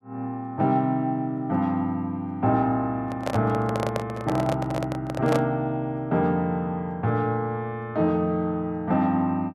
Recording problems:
handling noise; from 3 to 5.5 s; peak +2 dB vs average level

